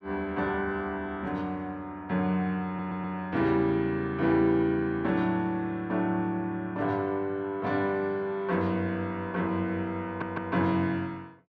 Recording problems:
audio stuttering; at 2.5 s and at 10 s

